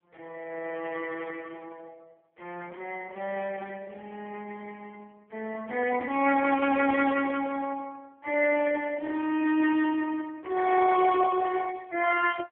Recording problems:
phone line; 280 Hz to 2.9 kHz, AMR-NB

